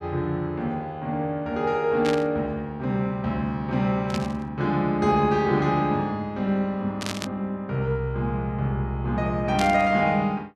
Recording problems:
burst of static; 4 times, first at 2 s; peak -2 dB vs average level

